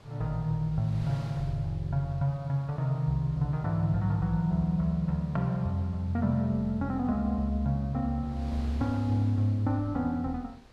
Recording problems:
wind on the microphone; below 1.3 kHz, SNR 22 dB

